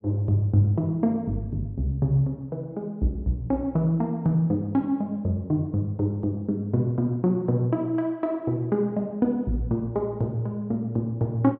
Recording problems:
none

